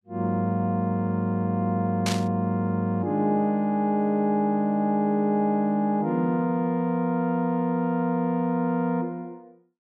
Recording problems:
static burst; at 2 s; peak -1 dB vs average level

